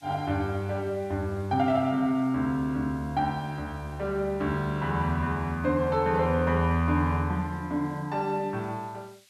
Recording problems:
background hiss; slope +4 dB per octave, SNR 30 dB

